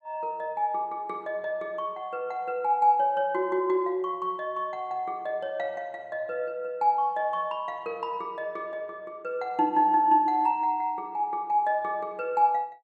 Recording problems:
none

